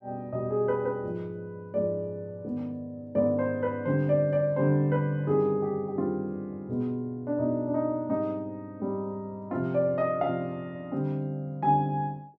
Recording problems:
none

